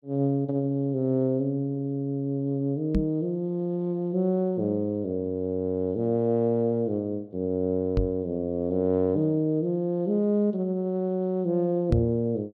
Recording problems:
microphone thump; at 3 s, at 8 s and at 12 s; peak +5 dB vs average level

